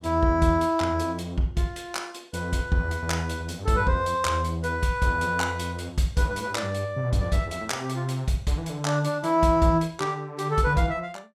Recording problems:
none

